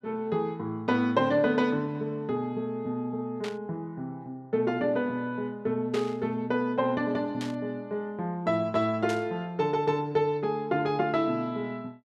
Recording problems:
static burst; 4 times, first at 3.5 s; peak -5 dB vs average level

